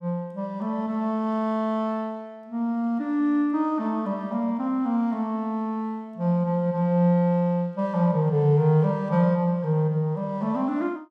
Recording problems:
none

